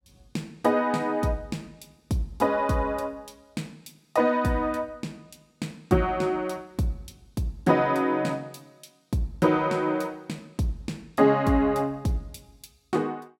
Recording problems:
none

